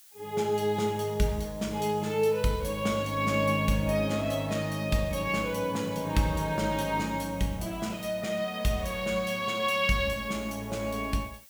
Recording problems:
background hiss; slope +3 dB per octave, SNR 22 dB

